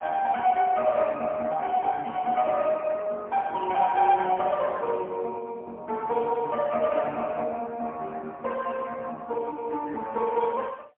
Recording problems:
telephone audio; 320 Hz to 3 kHz, AMR-NB, then MP3

